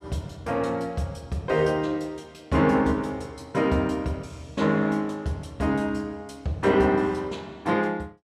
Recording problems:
none

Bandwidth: 14.5 kHz